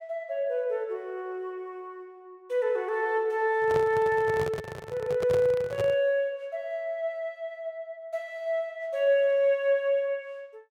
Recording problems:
handling noise; from 3.5 to 6 s; peak -2 dB vs average level

